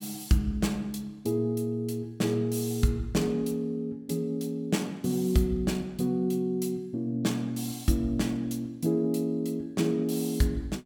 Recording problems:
none

